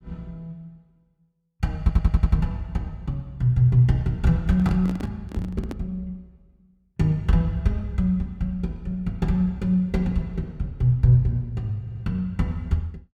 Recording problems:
audio stuttering; at 2 s and at 12 s
handling noise; from 4.5 to 6 s; peak -6 dB vs average level

